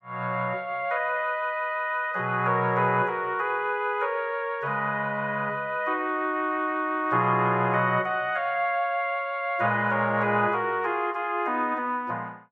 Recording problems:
none

